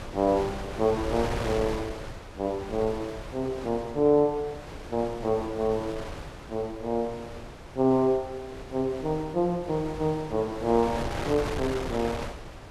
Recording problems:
wind on the microphone; below 1.2 kHz, SNR 10 dB

